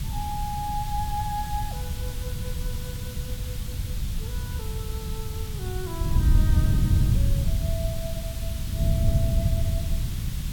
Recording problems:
background hiss; slope +2 dB per octave, SNR 3 dB
wind on the microphone; below 120 Hz, SNR -9 dB

